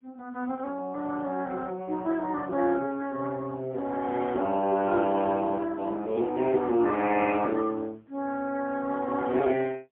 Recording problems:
telephone audio; 190 Hz to 3.3 kHz, AMR-NB, then MP3

